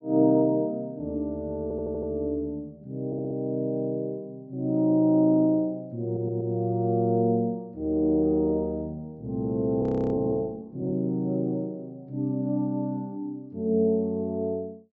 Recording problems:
treble missing; nothing above 7.6 kHz
audio stuttering; at 1.5 s, at 3 s and at 6 s
audio freezing; at 10 s

